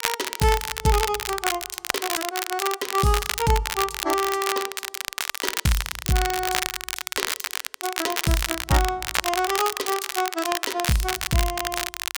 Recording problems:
crackling; vinyl, SNR 2 dB

